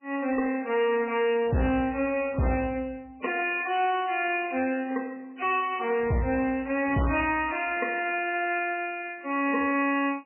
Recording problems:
lossy codec; MP3, log-spectral distance 5 dB, nothing above 2.6 kHz
distortion; hard clipping, signal-to-distortion ratio 11 dB

